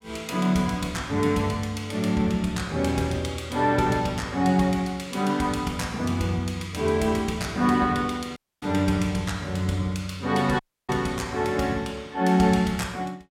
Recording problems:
dropout; at 8.5 s and at 11 s

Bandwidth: 16.5 kHz